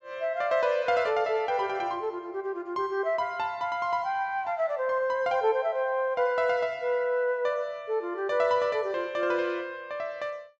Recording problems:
low-pass filter; nothing above 8 kHz

